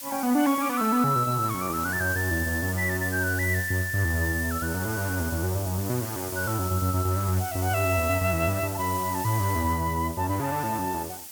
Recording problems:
hiss; SNR 9 dB

